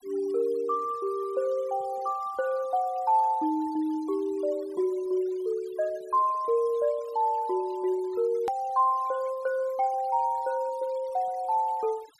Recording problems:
denoising artefacts; signal-to-artefact ratio 24 dB
hard cut with a click; at 8.5 s

